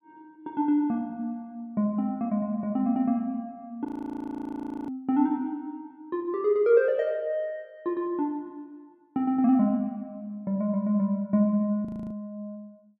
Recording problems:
audio freezing; at 4 s for 1 s and at 12 s

